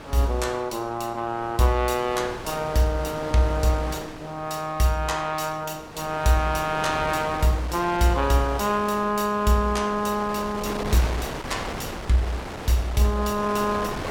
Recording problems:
wind on the microphone; below 1.6 kHz, SNR 11 dB

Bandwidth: 17.5 kHz